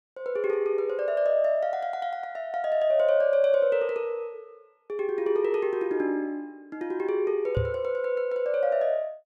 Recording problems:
knock on the microphone; at 7.5 s; peak +1 dB vs average level

